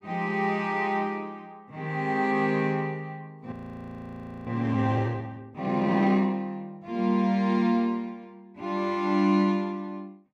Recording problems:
frozen audio; at 3.5 s for 1 s

